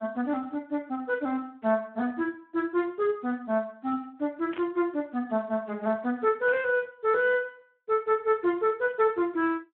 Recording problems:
telephone audio; 220 Hz to 3.4 kHz, Speex
burst of static; at 4.5 s and at 6.5 s; peak -7 dB vs average level

